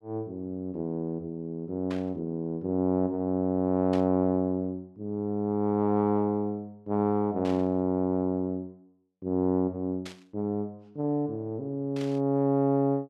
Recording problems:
static burst; 5 times, first at 2 s; peak -10 dB vs average level

